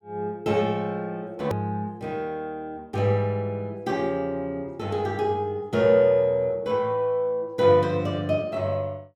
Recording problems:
click at an edit; at 1.5 s

